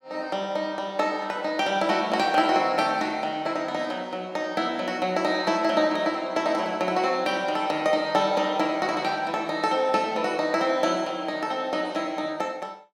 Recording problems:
none

